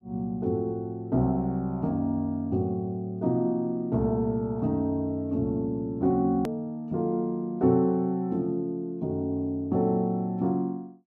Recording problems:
edit click; at 6.5 s

